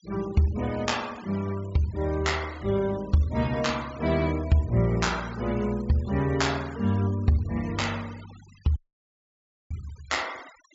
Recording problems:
low-pass filter; nothing above 7.5 kHz
noise reduction artefacts; signal-to-artefact ratio 20 dB
dropout; at 9 s for 1 s

